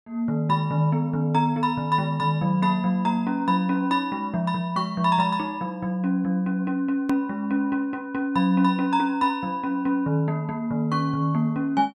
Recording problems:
click at an edit; at 7 s

